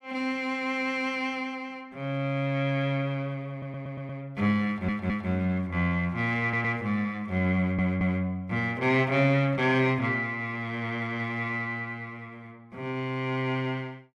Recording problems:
audio stuttering; 4 times, first at 3.5 s

